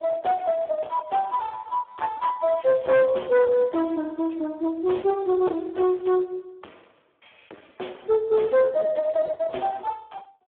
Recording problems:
telephone audio; 320 Hz to 3.4 kHz, Speex
distortion; soft clipping, signal-to-distortion ratio 9 dB

